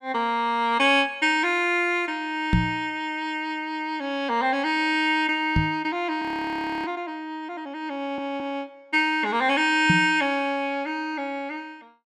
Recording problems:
microphone thump; at 2.5 s, at 5.5 s and at 10 s; peak +6 dB vs average level
audio freezing; at 6 s for 0.5 s
stutter; at 8 s

